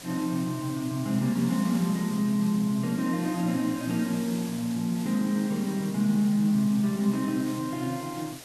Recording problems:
hiss; SNR 16 dB

